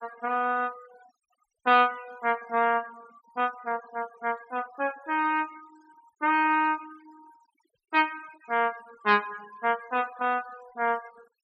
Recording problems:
noise reduction artefacts; signal-to-artefact ratio 24 dB

